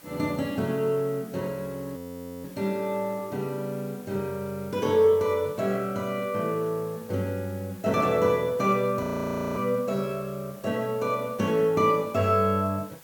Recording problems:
hiss; slope -2 dB per octave, SNR 22 dB
frozen audio; at 2 s and at 9 s for 0.5 s

